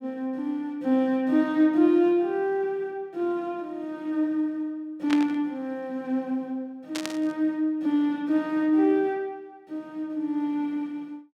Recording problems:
burst of static; at 5 s and at 7 s; peak -1 dB vs average level

